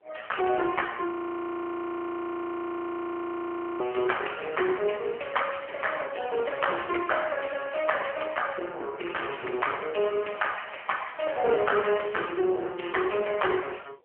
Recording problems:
phone line; 340 Hz to 3.1 kHz, AMR-NB
wind on the microphone; below 590 Hz, SNR 21 dB
audio freezing; at 1 s for 2.5 s

